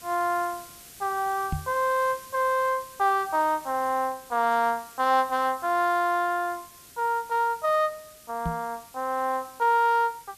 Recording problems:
hiss; SNR 20 dB
microphone bump; at 1.5 s and at 8.5 s; peak -1 dB vs average level

